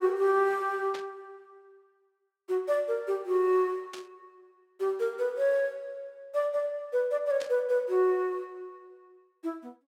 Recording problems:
burst of static; at 1 s, at 4 s and at 7.5 s; peak -8 dB vs average level

